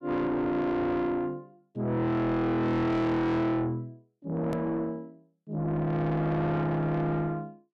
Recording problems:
distorted audio; soft clipping, signal-to-distortion ratio 7 dB
edit click; at 4.5 s

